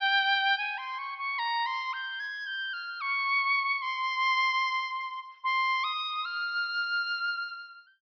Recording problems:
treble missing; nothing above 5.5 kHz

